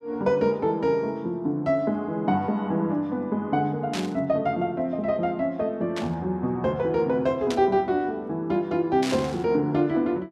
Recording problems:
static burst; 4 times, first at 4 s; peak -4 dB vs average level

